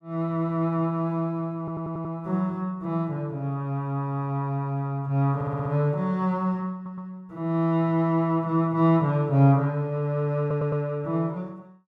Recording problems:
stutter; 4 times, first at 1.5 s

